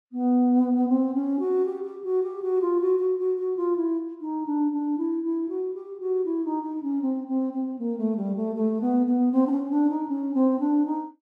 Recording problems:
none

